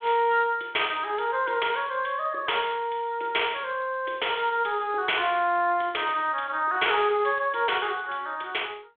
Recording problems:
phone line; 300 Hz to 3.5 kHz, G.726

